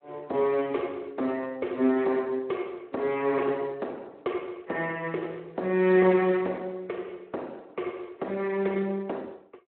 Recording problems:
telephone audio; 220 Hz to 3.4 kHz, Speex

